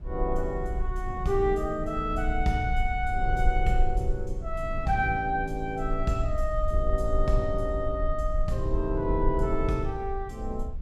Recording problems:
low-frequency rumble; below 50 Hz, SNR 4 dB
wind on the microphone; below 200 Hz, SNR 14 dB

